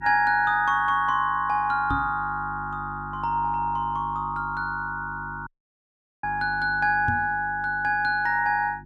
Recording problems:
hum; 50 Hz, harmonics up to 350 Hz, SNR 18 dB
microphone thump; at 2 s and at 7 s; peak -1 dB vs average level
audio cutting out; at 5.5 s for 1 s

